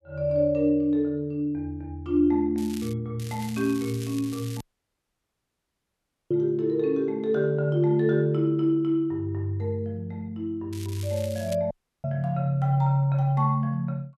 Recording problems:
crackling; at 2.5 s, from 3 to 4.5 s and at 11 s; loose cable, SNR 18 dB
audio cutting out; at 4.5 s for 1.5 s and at 12 s

